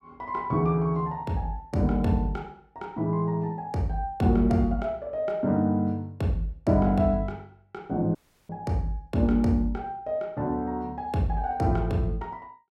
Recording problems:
audio cutting out; at 8 s

